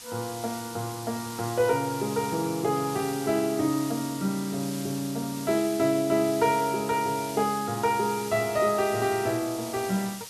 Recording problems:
hiss; slope +1 dB per octave, SNR 12 dB

